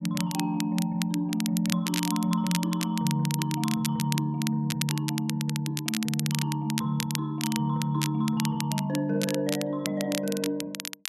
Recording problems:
crackling; vinyl, SNR 7 dB

